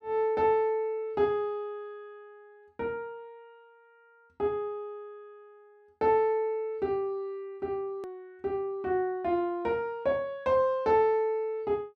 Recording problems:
edit click; at 8 s

